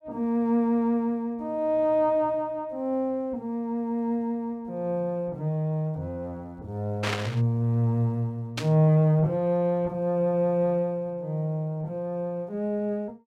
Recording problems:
static burst; at 7 s and at 8.5 s; peak +1 dB vs average level

